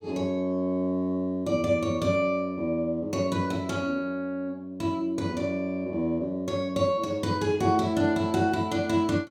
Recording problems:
none

